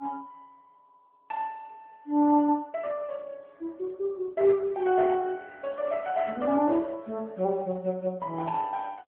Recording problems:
telephone audio; 240 Hz to 3.2 kHz, AMR-NB

